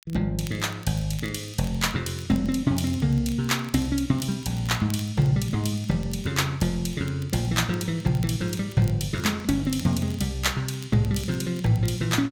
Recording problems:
crackling; vinyl, SNR 23 dB

